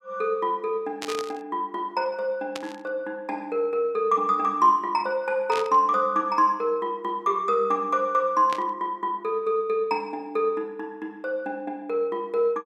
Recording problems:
burst of static; 4 times, first at 1 s; peak -4 dB vs average level

